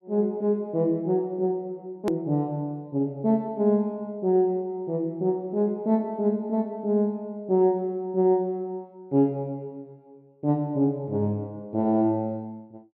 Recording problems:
hard cut with a click; at 2 s

